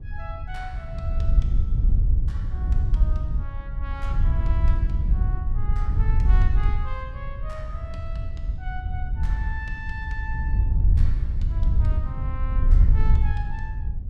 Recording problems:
wind noise; below 72 Hz, SNR -13 dB

